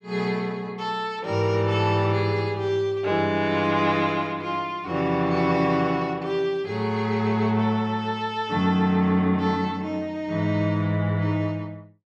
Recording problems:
none

